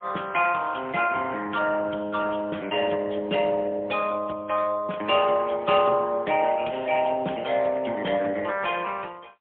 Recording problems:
telephone audio; 220 Hz to 3.4 kHz, AMR-NB, then MP3

